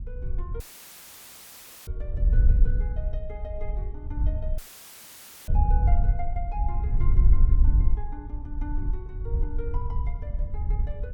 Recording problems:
wind on the microphone; below 60 Hz, SNR -14 dB
dropout; at 0.5 s for 1.5 s and at 4.5 s for 1 s; filled with static

